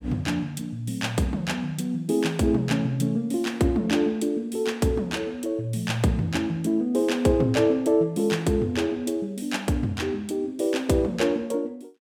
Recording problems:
none

